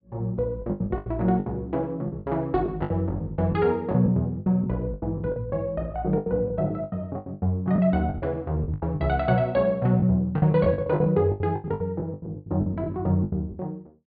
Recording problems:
low-pass filter; nothing above 4.8 kHz
lost packets; 17% of the sound replaced, filled with the last packet

